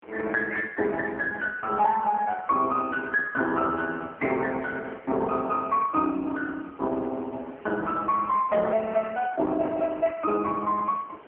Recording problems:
telephone audio; 240 Hz to 2.1 kHz, AMR-NB
background hiss; SNR 22 dB

